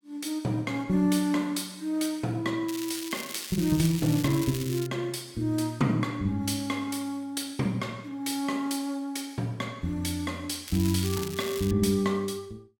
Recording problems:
crackle; from 2.5 to 5 s and from 11 to 12 s; loose cable, SNR 9 dB

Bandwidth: 17 kHz